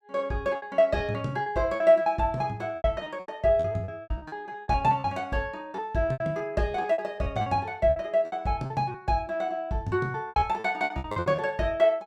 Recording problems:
lost packets; 15% of the sound replaced, filled with repeated pitch periods

